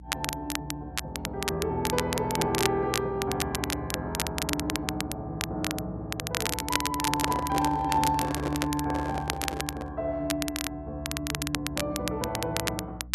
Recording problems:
hum; 60 Hz, harmonics up to 300 Hz, SNR 15 dB
crackle; vinyl, SNR 2 dB
microphone handling noise; from 7 to 10 s; peak +2 dB vs average level

